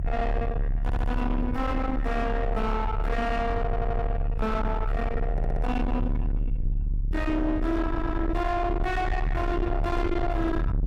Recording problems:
distortion; soft clipping, signal-to-distortion ratio 8 dB
low-frequency rumble; below 240 Hz, strongest tone 36 Hz, SNR 1 dB
audio stuttering; 4 times, first at 1 s

